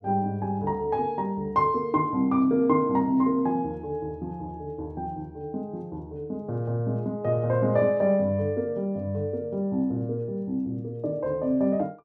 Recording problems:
none

